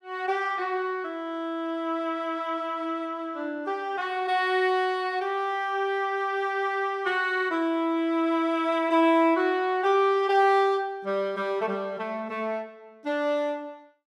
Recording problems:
none

